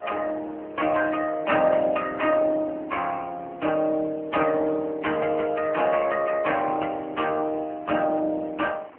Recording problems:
phone line; 240 Hz to 3.1 kHz, AMR-NB
wind on the microphone; below 1.5 kHz, SNR 24 dB

